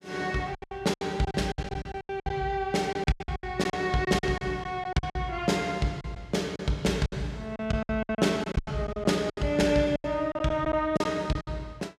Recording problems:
lost packets; 16% of the sound replaced, filled with silence

